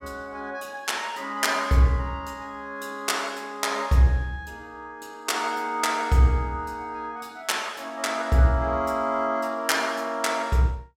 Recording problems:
none

